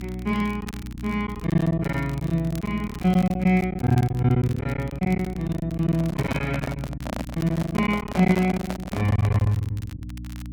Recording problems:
mains hum; 60 Hz, harmonics up to 300 Hz, SNR 12 dB
crackling; vinyl, SNR 22 dB
packet loss; 14% of the sound replaced, filled with silence
microphone handling noise; from 6 to 9.5 s; peak -1 dB vs average level

